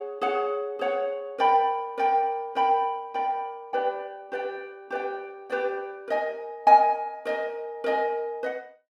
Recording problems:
none

